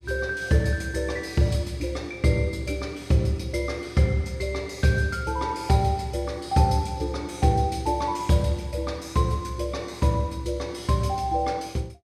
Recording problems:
none

